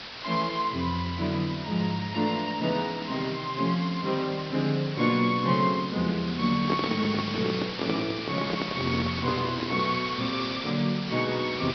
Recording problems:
treble missing; nothing above 5.5 kHz
hiss; SNR 8 dB
handling noise; from 6.5 to 10 s; peak +3 dB vs average level

